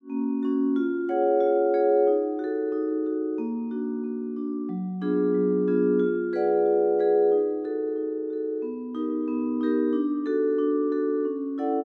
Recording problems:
none

